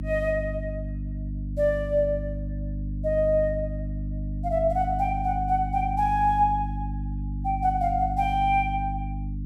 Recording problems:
hum; 50 Hz, harmonics up to 300 Hz, SNR 6 dB

